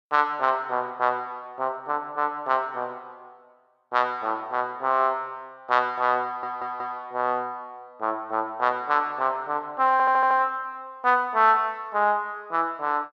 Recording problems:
stutter; at 6.5 s and at 10 s

